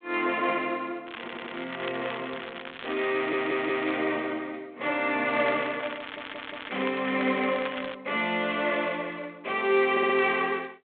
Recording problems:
telephone audio; 260 Hz to 3.7 kHz, G.726
crackle; from 1 to 4 s and from 5.5 to 8 s; loose cable, SNR 12 dB
audio stuttering; 4 times, first at 1 s

